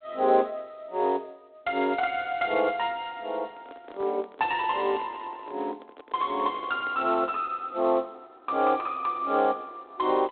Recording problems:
phone line; 260 Hz to 3.7 kHz, G.726
microphone handling noise; from 3.5 to 7.5 s; peak -12 dB vs average level

